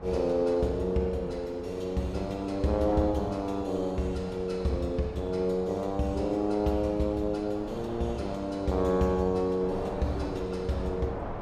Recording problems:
wind noise; below 800 Hz, SNR 13 dB

